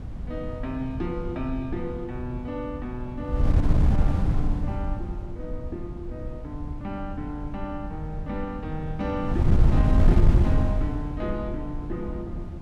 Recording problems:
wind on the microphone; below 110 Hz, SNR -6 dB

